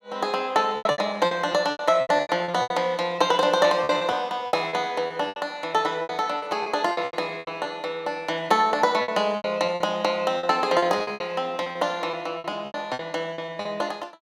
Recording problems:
lost packets; 16% of the sound replaced, filled with repeated pitch periods

